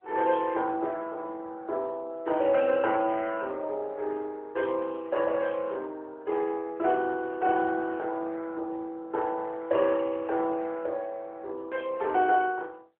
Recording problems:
phone line; 340 Hz to 3.2 kHz, AMR-NB

